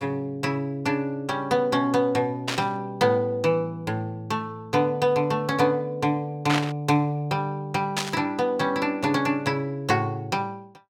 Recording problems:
burst of static; at 2.5 s, at 6.5 s and at 8 s; peak +3 dB vs average level

